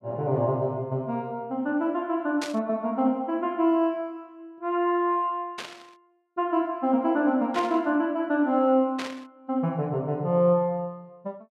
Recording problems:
burst of static; 4 times, first at 2.5 s; peak -4 dB vs average level

